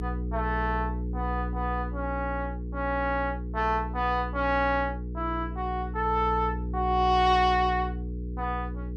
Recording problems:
mains hum; 60 Hz, harmonics up to 480 Hz, SNR 6 dB

